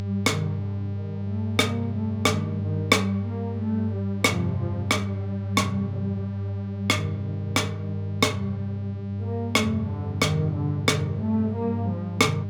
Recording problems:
hum; 50 Hz, harmonics up to 800 Hz, SNR 4 dB

